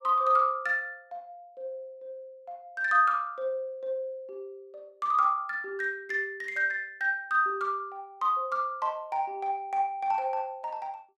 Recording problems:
none

